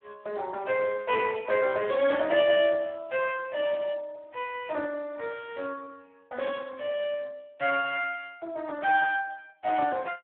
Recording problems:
phone line; 320 Hz to 3.3 kHz, Speex

